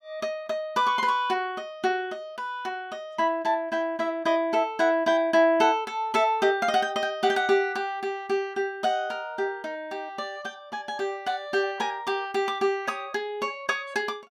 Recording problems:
none

